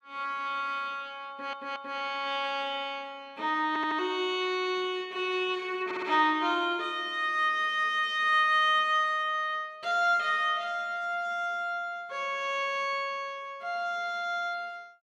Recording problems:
stutter; at 1.5 s, at 3.5 s and at 6 s

